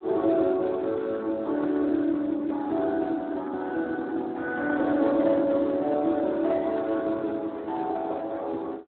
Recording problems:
telephone audio; 240 Hz to 2 kHz, Speex

